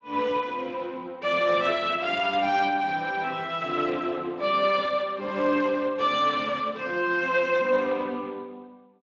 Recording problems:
lossy codec; Speex, log-spectral distance 4 dB

